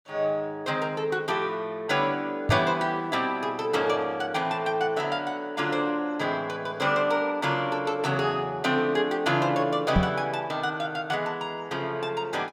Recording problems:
knock on the microphone; at 2.5 s and at 10 s; peak +7 dB vs average level

